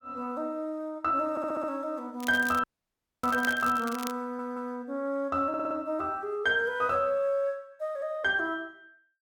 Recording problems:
audio stuttering; at 1.5 s, at 4 s and at 5.5 s
crackling; from 2 to 4 s; loose cable, SNR 14 dB
dropout; at 2.5 s for 0.5 s

